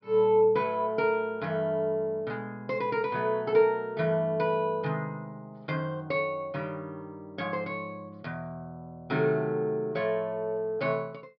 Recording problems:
treble missing; nothing above 5.5 kHz

